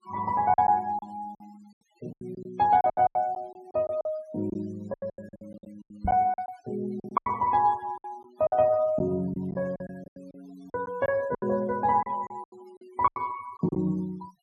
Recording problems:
noise reduction artefacts; signal-to-artefact ratio 26 dB
lost packets; 15% of the sound replaced, filled with silence
knock on the microphone; at 6 s; peak -1 dB vs average level

